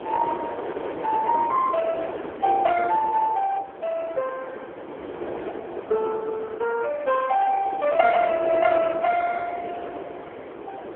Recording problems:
phone line; 370 Hz to 2.3 kHz, AMR-NB
wind on the microphone; below 770 Hz, SNR 11 dB

